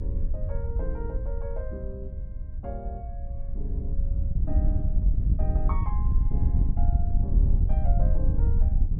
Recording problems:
rumble; below 76 Hz, SNR 1 dB
wind noise; below 72 Hz, SNR -13 dB

